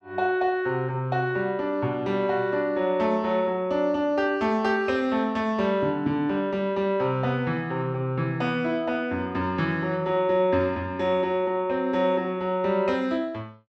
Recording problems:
none

